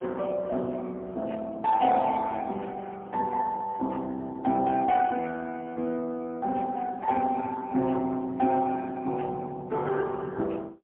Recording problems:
phone line; 170 Hz to 3.6 kHz, AMR-NB, then MP3

